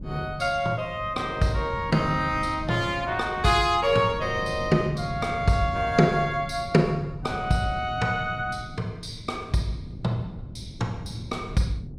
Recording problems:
wind on the microphone; below 190 Hz, SNR 13 dB

